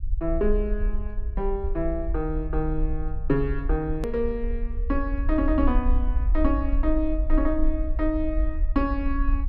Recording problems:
low-frequency rumble; below 52 Hz, SNR 1 dB
click at an edit; at 4 s

